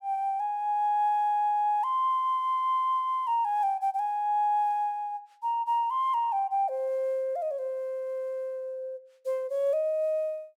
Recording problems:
none

